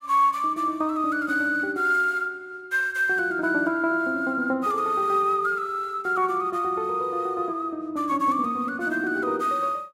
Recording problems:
none

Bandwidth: 16 kHz